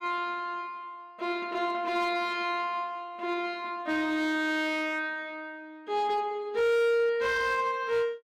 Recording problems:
distorted audio; hard clipping, signal-to-distortion ratio 11 dB

